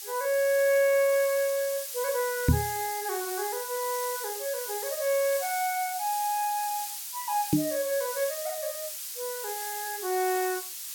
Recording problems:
background hiss; slope +5 dB per octave, SNR 5 dB
microphone thump; at 2.5 s and at 7.5 s; peak +10 dB vs average level

